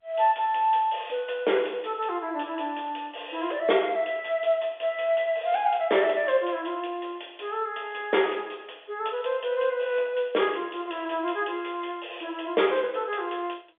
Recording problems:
telephone audio; 320 Hz to 3.5 kHz, G.711

